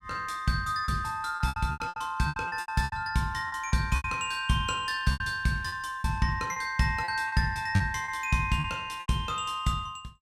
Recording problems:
packet loss; 12% of the sound replaced, filled with repeated pitch periods

